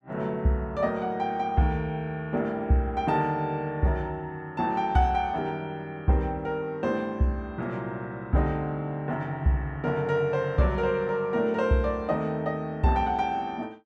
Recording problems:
none

